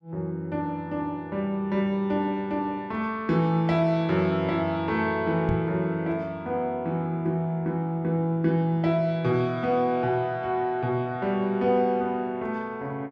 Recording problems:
knock on the microphone; at 5.5 s; peak +1 dB vs average level

